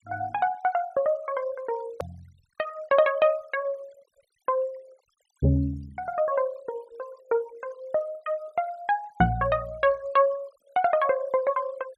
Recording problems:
noise reduction artefacts; signal-to-artefact ratio 26 dB
click at an edit; at 2 s

